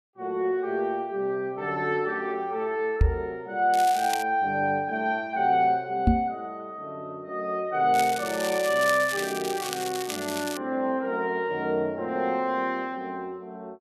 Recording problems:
microphone bump; at 3 s and at 6 s; peak +9 dB vs average level
crackling; at 3.5 s and from 8 to 11 s; loose cable, SNR 9 dB

